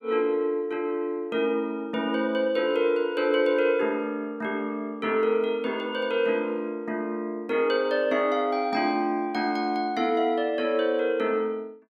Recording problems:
none

